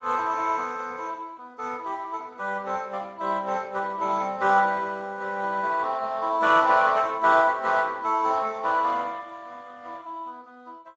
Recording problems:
lossy compression; Speex, log-spectral distance 4 dB

